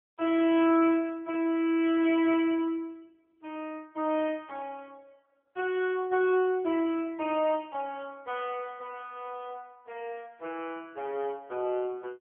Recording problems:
phone line; 280 Hz to 3.3 kHz, AMR-NB

